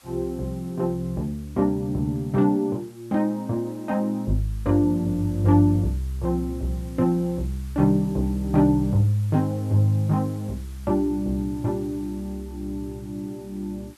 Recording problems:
background hiss; SNR 27 dB

